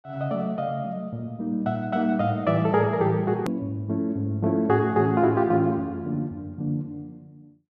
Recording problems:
edit click; at 3.5 s

